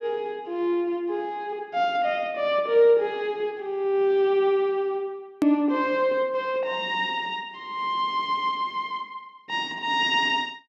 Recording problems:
click at an edit; at 5.5 s

